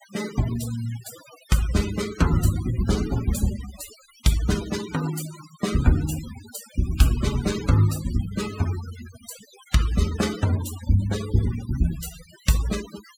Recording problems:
denoising artefacts; signal-to-artefact ratio 13 dB

